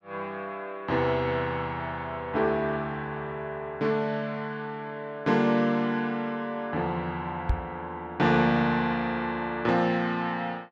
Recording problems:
knock on the microphone; at 7.5 s; peak +5 dB vs average level

